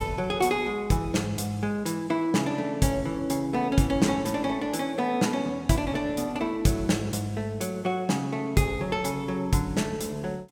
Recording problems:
none

